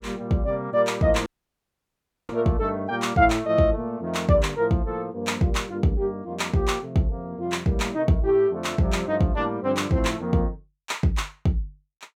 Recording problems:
dropout; at 1.5 s for 1 s

